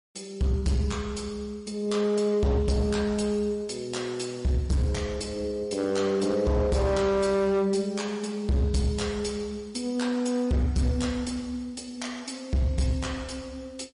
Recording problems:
codec artefacts; MP3, log-spectral distance 3 dB, nothing above 10.4 kHz
distortion; hard clipping, signal-to-distortion ratio 11 dB

